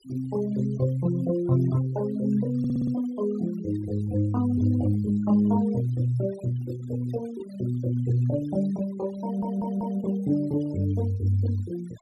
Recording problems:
noise reduction artefacts; signal-to-artefact ratio 22 dB
audio stuttering; at 2.5 s and at 9 s

